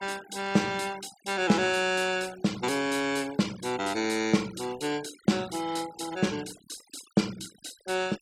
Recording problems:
noise reduction artefacts; signal-to-artefact ratio 18 dB

